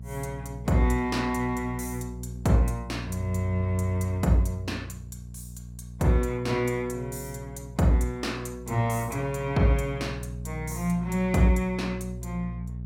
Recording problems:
hum; 60 Hz, harmonics up to 420 Hz, SNR 11 dB

